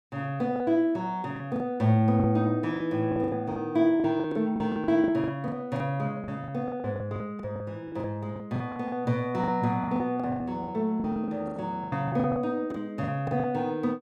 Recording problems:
packet loss; 16% of the sound replaced, filled with the last packet

